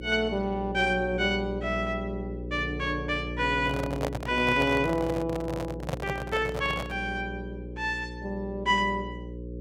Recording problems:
mains hum; 60 Hz, harmonics up to 540 Hz, SNR 9 dB
handling noise; from 3.5 to 7 s; peak +2 dB vs average level

